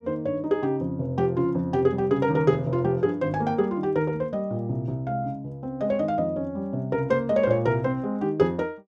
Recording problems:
none

